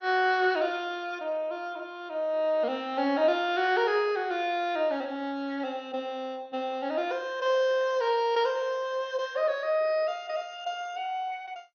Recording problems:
codec artefacts; MP2, log-spectral distance 2 dB, nothing above 6.3 kHz

